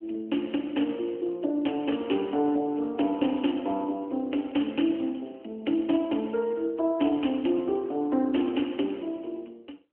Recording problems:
telephone audio; 220 Hz to 3.1 kHz, AMR-NB

